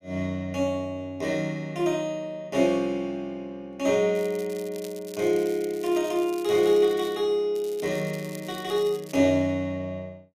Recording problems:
crackling; from 4 to 7 s and from 7.5 to 9 s; loose cable, SNR 20 dB

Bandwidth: 15 kHz